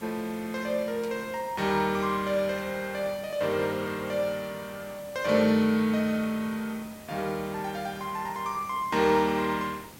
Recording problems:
hiss; slope -4 dB per octave, SNR 19 dB
burst of static; at 1 s and at 2.5 s; peak -13 dB vs average level

